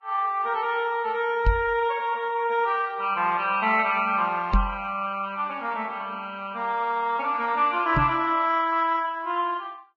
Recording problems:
lossy compression; Vorbis, log-spectral distance 2 dB
knock on the microphone; at 1.5 s, at 4.5 s and at 8 s; peak +5 dB vs average level

